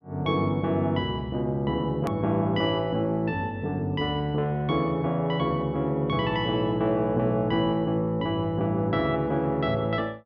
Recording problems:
click at an edit; at 2 s

